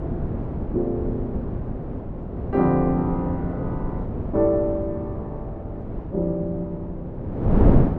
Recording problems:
wind noise; below 300 Hz, SNR 2 dB

